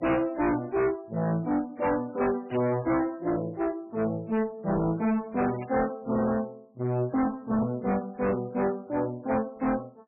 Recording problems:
lossy codec; MP3, log-spectral distance 2 dB, nothing above 2.7 kHz
distorted audio; hard clipping, signal-to-distortion ratio 6 dB
static burst; at 2.5 s and at 5.5 s; peak -12 dB vs average level

